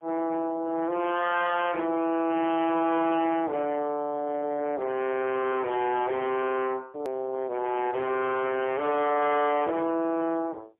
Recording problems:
telephone audio; 240 Hz to 3.5 kHz, AMR-NB, then MP3
distortion; hard clipping, signal-to-distortion ratio 6 dB
hard cut with a click; at 7 s

